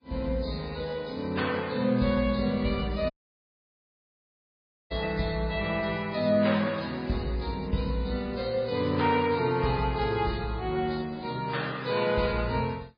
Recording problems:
lossy codec; MP3, then AAC, log-spectral distance 4 dB, nothing above 4.5 kHz
dropout; at 3 s for 2 s

